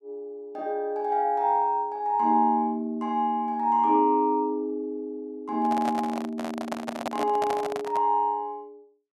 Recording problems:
handling noise; from 5.5 to 8 s; peak -1 dB vs average level

